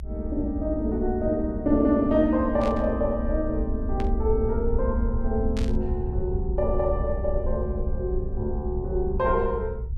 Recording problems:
low-frequency rumble; below 68 Hz, SNR 5 dB
static burst; at 2.5 s, at 4 s and at 5.5 s; peak -8 dB vs average level

